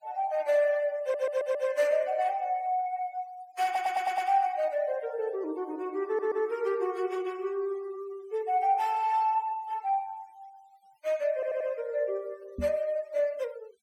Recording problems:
noise reduction artefacts; signal-to-artefact ratio 24 dB
stutter; 4 times, first at 1 s
microphone thump; at 13 s; peak -2 dB vs average level

